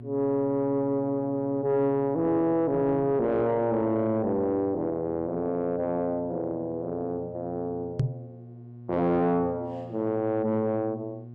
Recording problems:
distorted audio; soft clipping, signal-to-distortion ratio 10 dB
hum; 60 Hz, harmonics up to 720 Hz, SNR 18 dB
microphone thump; at 8 s; peak +5 dB vs average level

